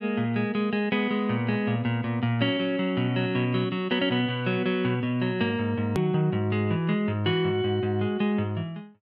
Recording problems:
edit click; at 6 s

